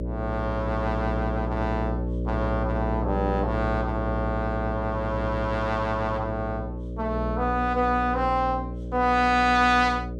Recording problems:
hum; 60 Hz, harmonics up to 600 Hz, SNR 5 dB

